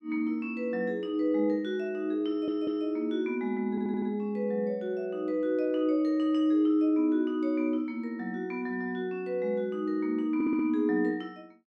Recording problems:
stutter; at 2.5 s, at 3.5 s and at 10 s

